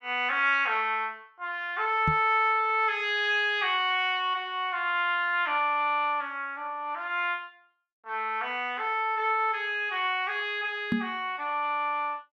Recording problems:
microphone thump; at 2 s and at 11 s; peak +2 dB vs average level

